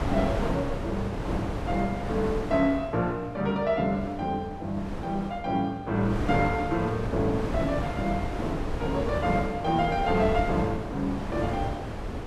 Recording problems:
wind noise; below 570 Hz, SNR 5 dB

